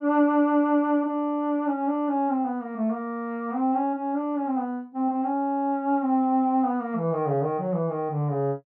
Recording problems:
none

